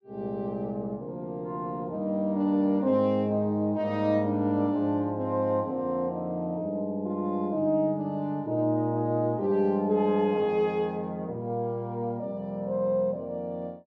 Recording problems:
none

